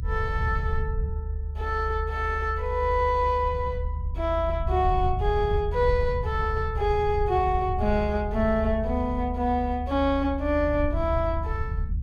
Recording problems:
low-frequency rumble; below 76 Hz, SNR 5 dB

